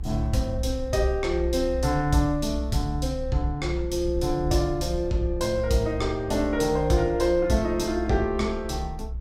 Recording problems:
low-frequency rumble; below 64 Hz, strongest tone 62 Hz, SNR 8 dB

